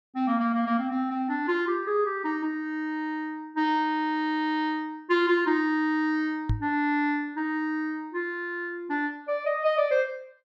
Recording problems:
microphone bump; at 6.5 s; peak +4 dB vs average level

